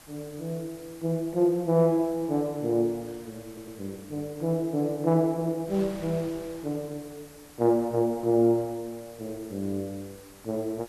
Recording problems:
background hiss; slope -1 dB per octave, SNR 25 dB
wind on the microphone; below 2.8 kHz, SNR 25 dB
stutter; at 3.5 s

